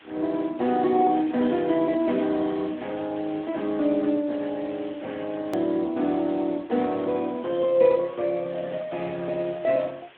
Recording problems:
telephone audio; 190 Hz to 3.7 kHz, Speex
background hiss; SNR 23 dB
hard cut with a click; at 5.5 s

